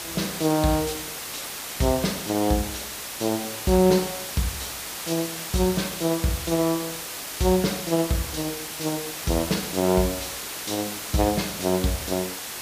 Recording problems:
background hiss; slope -1 dB per octave, SNR 6 dB

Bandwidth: 15 kHz